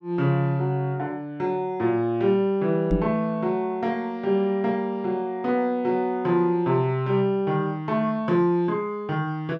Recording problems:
microphone bump; at 3 s; peak +4 dB vs average level

